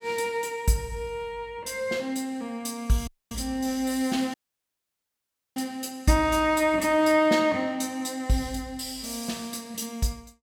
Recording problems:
dropout; at 3 s and at 4.5 s for 1 s

